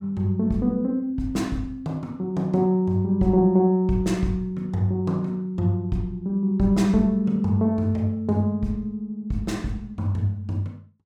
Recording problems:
none

